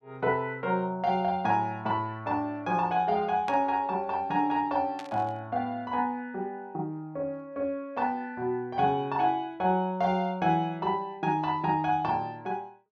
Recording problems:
static burst; at 3.5 s and at 5 s; peak -9 dB vs average level

